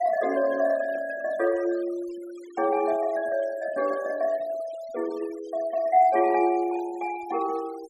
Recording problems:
denoising artefacts; signal-to-artefact ratio 22 dB

